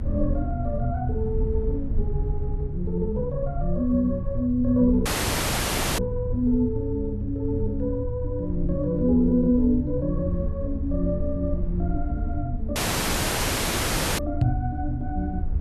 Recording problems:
low-frequency rumble; below 78 Hz, SNR 5 dB
dropout; at 5 s for 1 s and at 13 s for 1.5 s
microphone thump; at 14 s; peak +8 dB vs average level

